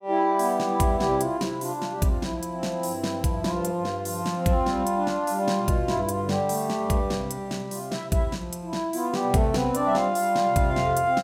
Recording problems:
none

